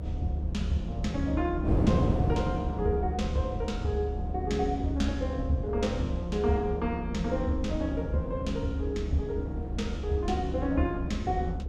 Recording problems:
hum; 50 Hz, harmonics up to 700 Hz, SNR 22 dB
low-frequency rumble; below 72 Hz, strongest tone 72 Hz, SNR 5 dB
wind noise; below 340 Hz, SNR 5 dB

